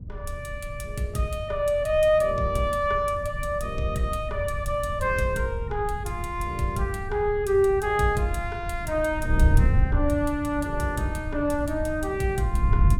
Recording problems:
wind noise; below 96 Hz, SNR 6 dB

